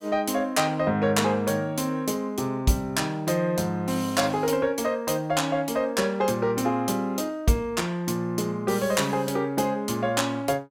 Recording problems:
none

